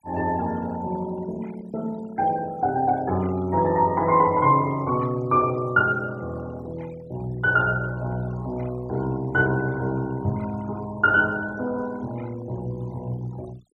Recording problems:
denoising artefacts; signal-to-artefact ratio 23 dB

